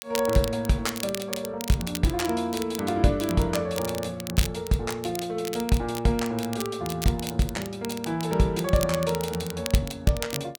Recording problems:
crackle; vinyl, SNR 10 dB

